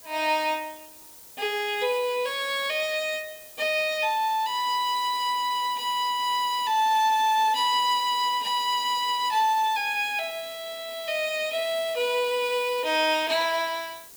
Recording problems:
background hiss; SNR 19 dB

